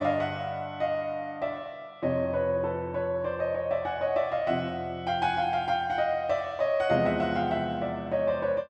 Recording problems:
none

